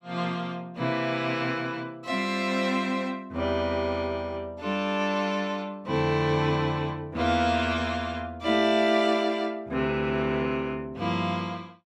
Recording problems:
none

